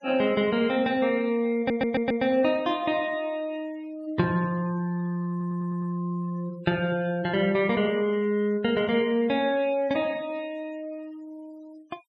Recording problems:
denoising artefacts; signal-to-artefact ratio 25 dB
audio stuttering; at 1.5 s and at 5.5 s

